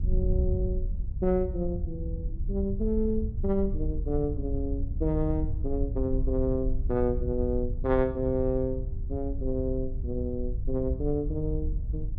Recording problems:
wind on the microphone; below 72 Hz, SNR 3 dB

